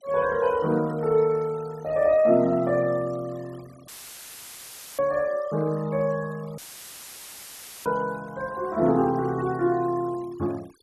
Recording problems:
noise reduction artefacts; signal-to-artefact ratio 23 dB
dropout; at 4 s for 1 s and at 6.5 s for 1.5 s; filled with static

